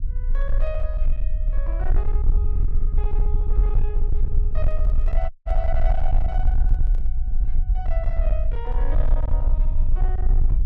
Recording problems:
distortion; hard clipping, signal-to-distortion ratio 10 dB
low-frequency rumble; below 44 Hz, strongest tone 18 Hz, SNR -12 dB
microphone handling noise; from 4.5 to 7 s; peak -6 dB vs average level
audio cutting out; at 5.5 s

